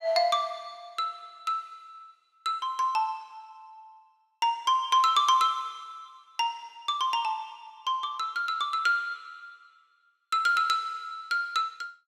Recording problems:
none

